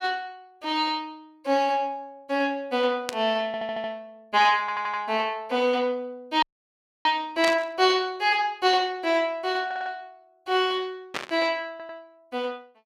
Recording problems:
burst of static; at 3 s, at 7.5 s and at 11 s; peak 0 dB vs average level
stutter; 4 times, first at 3.5 s
dropout; at 6.5 s for 0.5 s

